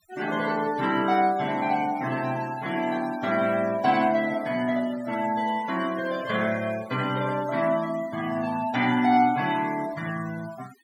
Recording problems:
denoising artefacts; signal-to-artefact ratio 18 dB

